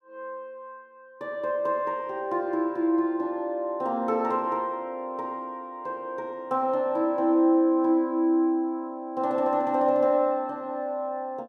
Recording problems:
none

